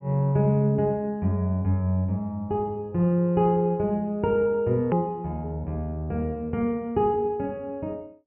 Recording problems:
treble missing; nothing above 3 kHz
click at an edit; at 5 s

